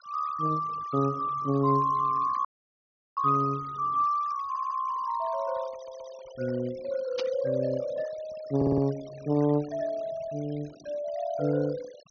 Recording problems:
treble cut off; nothing above 6.4 kHz
noise reduction artefacts; signal-to-artefact ratio 22 dB
dropout; at 2.5 s for 0.5 s
stutter; at 4.5 s, at 6 s and at 8.5 s
static burst; at 7 s; peak -3 dB vs average level

